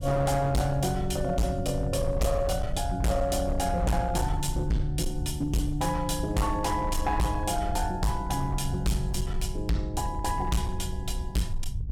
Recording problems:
distorted audio; hard clipping, signal-to-distortion ratio 6 dB
rumble; below 84 Hz, SNR 6 dB

